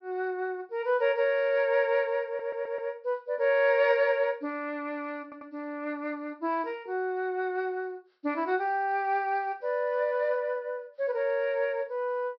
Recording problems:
low-pass filter; nothing above 5.5 kHz
audio stuttering; at 2.5 s and at 5 s

